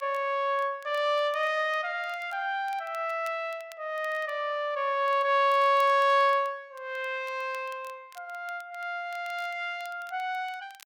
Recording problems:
crackling; vinyl, SNR 28 dB

